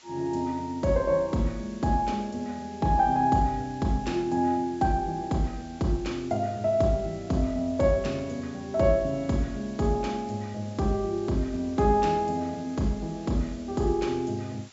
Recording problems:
treble cut off; nothing above 8 kHz
hiss; slope +1 dB per octave, SNR 24 dB

